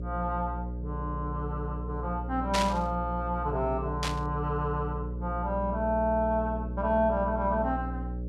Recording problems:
mains hum; 60 Hz, harmonics up to 600 Hz, SNR 5 dB
static burst; at 2.5 s and at 4 s; peak +5 dB vs average level

